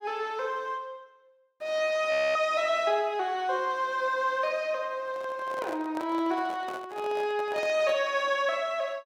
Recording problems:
frozen audio; at 2 s
microphone handling noise; from 5 to 8 s; peak -7 dB vs average level

